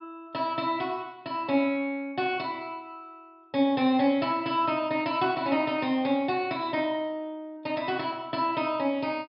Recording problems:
treble missing; nothing above 5.5 kHz

